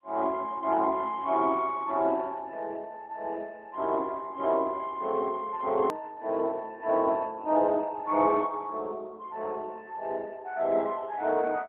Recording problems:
telephone audio; 220 Hz to 3.3 kHz, AMR-NB
edit click; at 6 s

